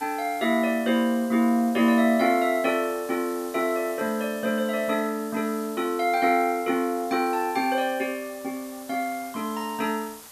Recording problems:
hiss; SNR 18 dB

